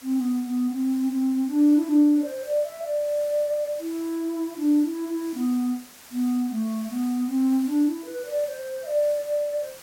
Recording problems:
hiss; slope -1 dB per octave, SNR 20 dB

